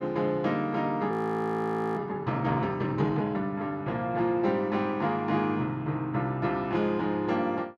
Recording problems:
audio freezing; at 1 s for 1 s

